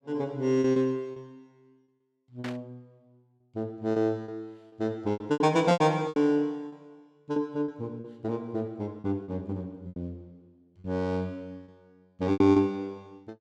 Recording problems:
packet loss; 11% of the sound replaced, filled with repeated pitch periods
burst of static; at 2.5 s; peak -7 dB vs average level

